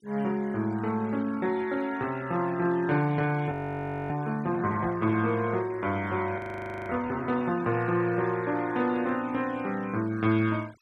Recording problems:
noise reduction artefacts; signal-to-artefact ratio 23 dB
frozen audio; at 3.5 s for 0.5 s and at 6.5 s for 0.5 s

